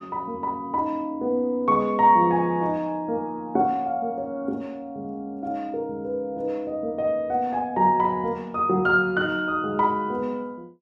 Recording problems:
none

